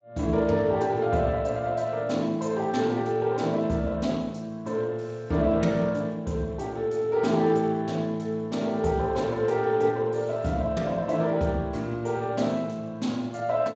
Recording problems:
lossy compression; Speex, log-spectral distance 3 dB, nothing above 7.3 kHz

